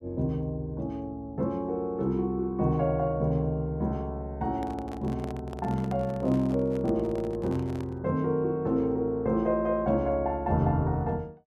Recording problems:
handling noise; from 4.5 to 8 s; peak -10 dB vs average level

